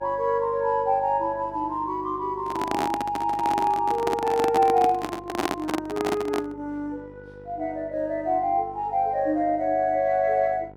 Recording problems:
hum; 50 Hz, harmonics up to 1.5 kHz, SNR 22 dB
handling noise; from 2.5 to 6.5 s; peak +3 dB vs average level

